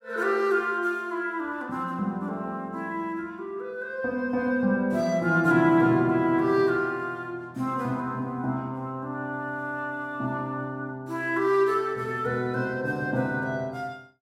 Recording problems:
none

